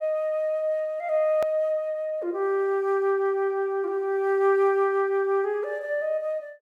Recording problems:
click at an edit; at 1.5 s

